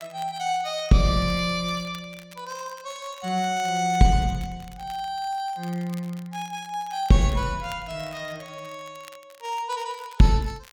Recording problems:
crackle; vinyl, SNR 24 dB

